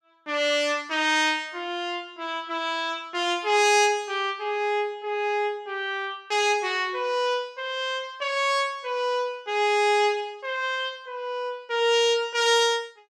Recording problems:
none

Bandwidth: 15 kHz